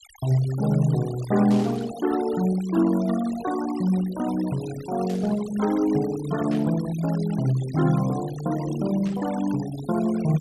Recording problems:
denoising artefacts; signal-to-artefact ratio 16 dB
static burst; 4 times, first at 1.5 s; peak -13 dB vs average level

